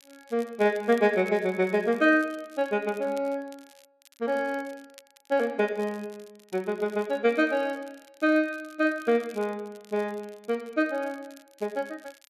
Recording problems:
crackling; vinyl, SNR 27 dB

